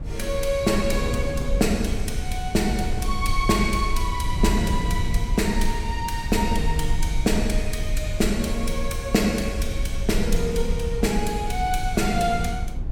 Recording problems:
rumble; below 58 Hz, strongest tone 20 Hz, SNR 6 dB
wind noise; below 100 Hz, SNR 7 dB

